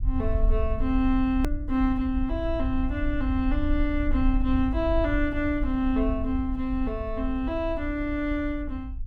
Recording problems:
low-frequency rumble; below 60 Hz, SNR 4 dB
edit click; at 1.5 s

